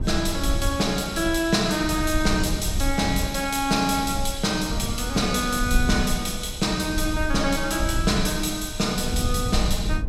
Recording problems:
rumble; below 80 Hz, SNR 7 dB

